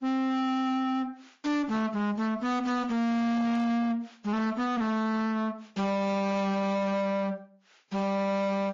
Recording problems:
codec artefacts; MP3, then AAC, log-spectral distance 2 dB
distortion; soft clipping, signal-to-distortion ratio 6 dB

